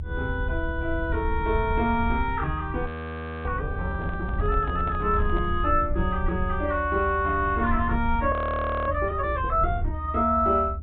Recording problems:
low-pass filter; nothing above 4 kHz
rumble; below 78 Hz, SNR 5 dB
audio freezing; at 3 s for 0.5 s and at 8.5 s for 0.5 s
handling noise; from 4 to 5.5 s; peak -9 dB vs average level

